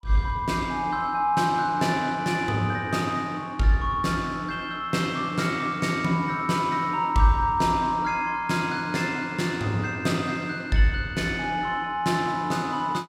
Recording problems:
none

